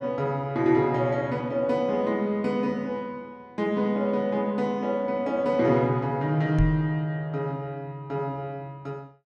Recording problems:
knock on the microphone; at 6.5 s; peak +4 dB vs average level

